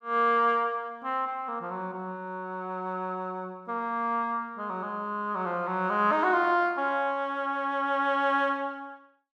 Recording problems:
none

